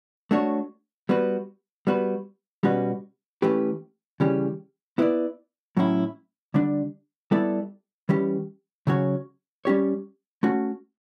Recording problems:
none

